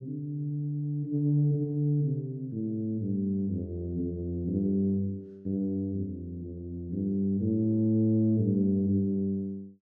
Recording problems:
none

